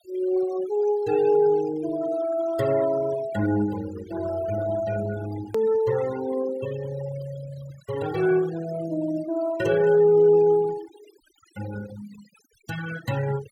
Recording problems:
denoising artefacts; signal-to-artefact ratio 17 dB
hard cut with a click; at 5.5 s

